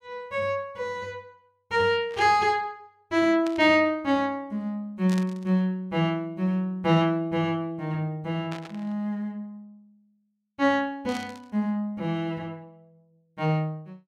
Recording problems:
burst of static; 5 times, first at 2 s; peak -8 dB vs average level

